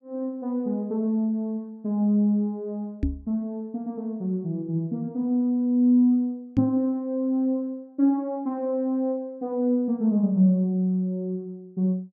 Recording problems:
microphone thump; at 3 s and at 6.5 s; peak +3 dB vs average level

